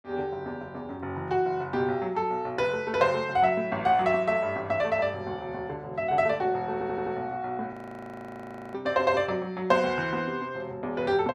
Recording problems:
stutter; at 6.5 s
audio freezing; at 7.5 s for 1 s

